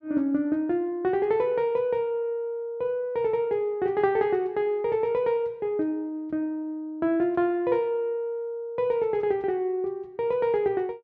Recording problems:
none

